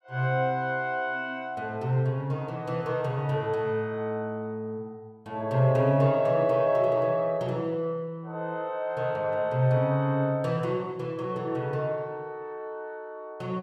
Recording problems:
none

